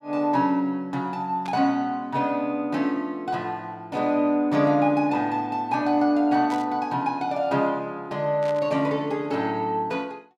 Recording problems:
burst of static; at 1.5 s, at 6.5 s and at 8.5 s; peak -11 dB vs average level

